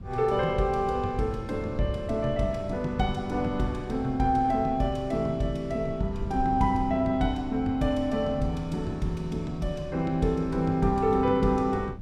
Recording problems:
wind on the microphone; below 130 Hz, SNR 14 dB

